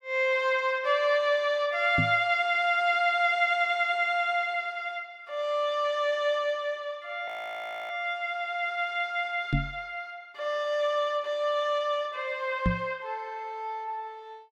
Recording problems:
microphone thump; at 2 s, at 9.5 s and at 13 s; peak +4 dB vs average level
frozen audio; at 7.5 s for 0.5 s

